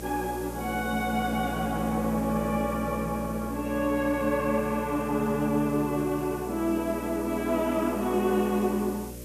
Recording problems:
hum; 60 Hz, harmonics up to 600 Hz, SNR 12 dB
hiss; slope 0 dB per octave, SNR 18 dB

